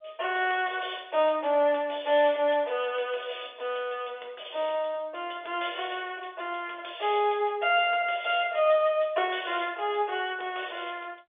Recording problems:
telephone audio; 340 Hz to 3.6 kHz, G.711

